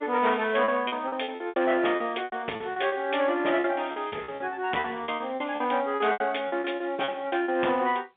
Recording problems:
telephone audio; 260 Hz to 3.6 kHz, G.711
distortion; soft clipping, signal-to-distortion ratio 11 dB
lost packets; 16% of the sound replaced, filled with repeated pitch periods

